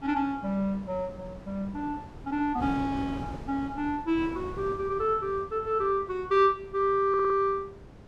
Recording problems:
wind on the microphone; below 440 Hz, SNR 15 dB
audio stuttering; at 7 s

